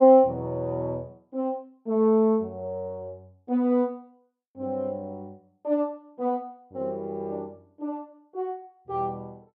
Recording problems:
none

